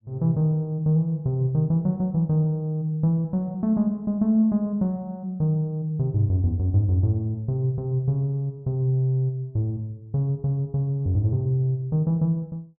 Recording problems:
none

